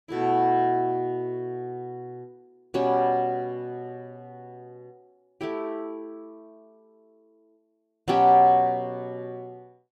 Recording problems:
none

